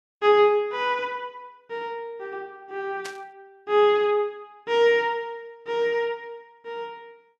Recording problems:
burst of static; at 3 s; peak -8 dB vs average level

